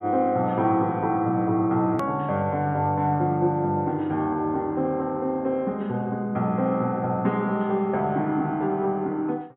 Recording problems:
treble missing; nothing above 3.9 kHz
edit click; at 2 s

